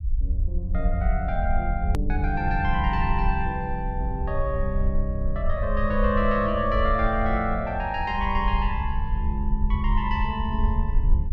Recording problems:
rumble; below 60 Hz, SNR 2 dB
hard cut with a click; at 2 s

